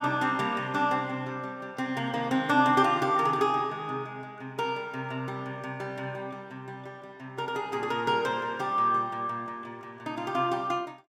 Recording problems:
none

